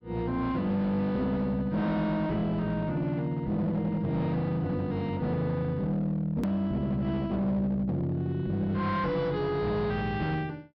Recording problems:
treble cut off; nothing above 5.5 kHz
distorted audio; hard clipping, signal-to-distortion ratio 11 dB
edit click; at 6.5 s

